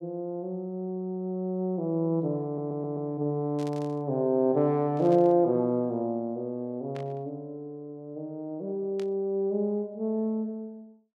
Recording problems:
audio stuttering; at 2.5 s
burst of static; 4 times, first at 3.5 s; peak -14 dB vs average level

